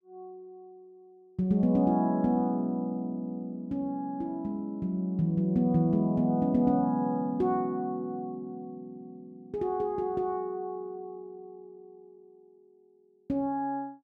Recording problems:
none

